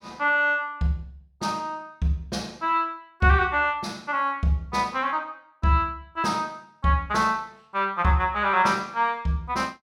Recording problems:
none

